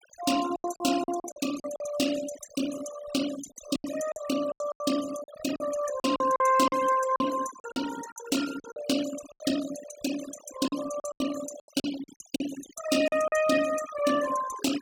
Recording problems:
noise reduction artefacts; signal-to-artefact ratio 10 dB
packet loss; 11% of the sound replaced, filled with silence

